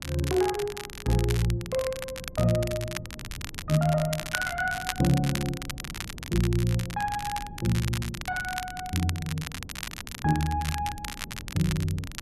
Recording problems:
wind noise; below 200 Hz, SNR 16 dB
crackling; vinyl, SNR 9 dB

